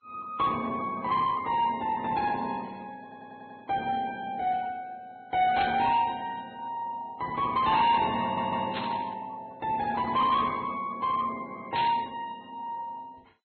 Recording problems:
lossy compression; MP2, then Vorbis, log-spectral distance 3 dB, nothing above 4.2 kHz
distorted audio; soft clipping, signal-to-distortion ratio 10 dB
audio stuttering; at 3 s and at 8 s
burst of static; at 5.5 s, at 8.5 s and at 12 s; peak -1 dB vs average level

